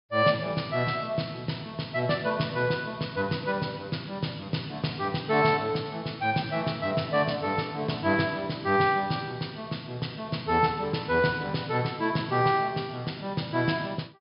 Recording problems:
treble cut off; nothing above 5.5 kHz

